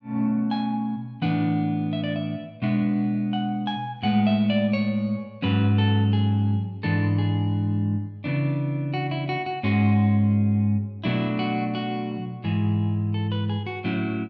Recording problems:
none

